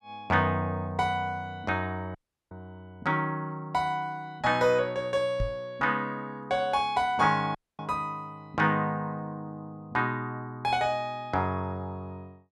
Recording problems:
audio cutting out; at 2 s and at 7.5 s
microphone bump; at 5.5 s; peak +1 dB vs average level

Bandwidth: 13.5 kHz